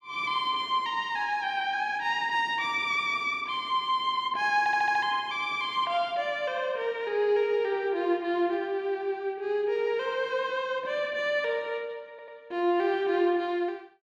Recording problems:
stutter; at 4.5 s and at 12 s

